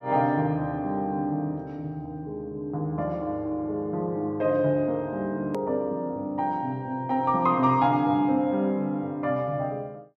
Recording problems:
edit click; at 5.5 s

